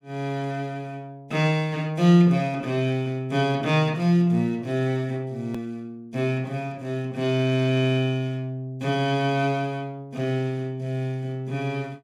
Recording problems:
click at an edit; at 5.5 s

